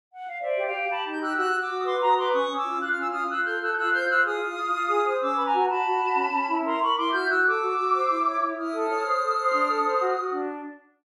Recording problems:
none

